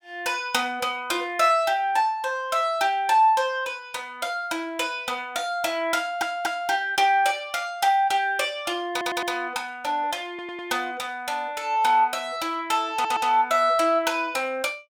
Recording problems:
stutter; 4 times, first at 6 s

